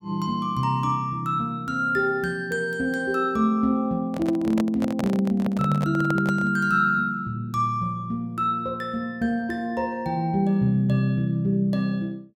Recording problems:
microphone handling noise; from 4 to 6.5 s; peak -2 dB vs average level

